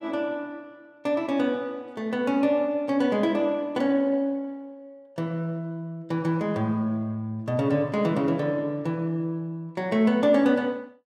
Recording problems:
none

